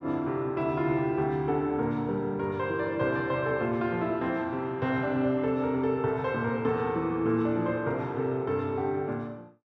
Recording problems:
none

